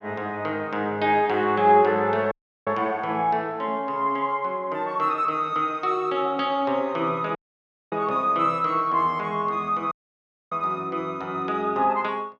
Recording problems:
audio cutting out; at 2.5 s, at 7.5 s for 0.5 s and at 10 s for 0.5 s

